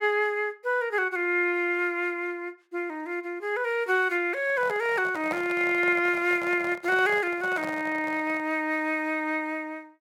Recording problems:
handling noise; from 4.5 to 8.5 s; peak -4 dB vs average level

